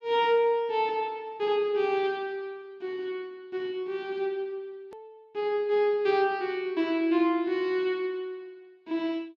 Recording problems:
edit click; at 5 s

